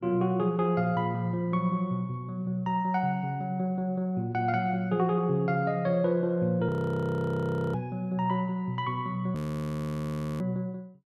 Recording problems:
audio freezing; at 6.5 s for 1 s and at 9.5 s for 1 s

